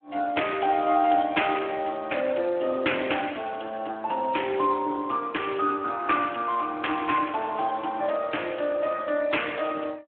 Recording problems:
phone line; 240 Hz to 3.4 kHz, Speex

